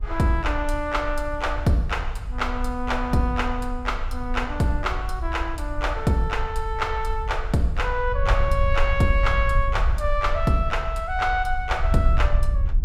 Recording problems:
wind on the microphone; below 60 Hz, SNR 4 dB

